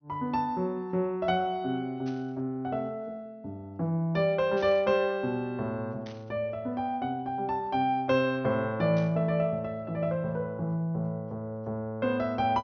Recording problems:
treble missing; nothing above 6.3 kHz
burst of static; 4 times, first at 2 s; peak -14 dB vs average level

